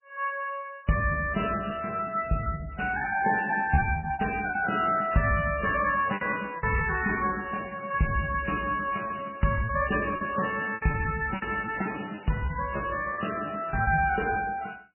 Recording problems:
codec artefacts; MP3, log-spectral distance 7 dB, nothing above 2.4 kHz
lost packets; 12% of the sound replaced, filled with repeated pitch periods

